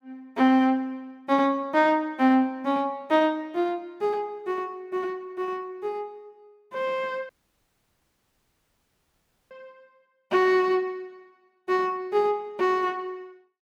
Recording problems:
dropout; at 7.5 s for 2 s

